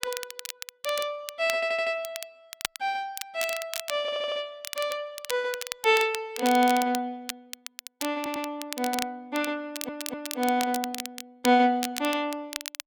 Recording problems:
crackling; vinyl, SNR 9 dB
stutter; 4 times, first at 1.5 s

